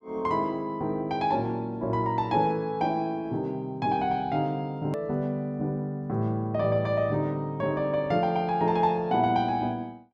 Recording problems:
edit click; at 5 s

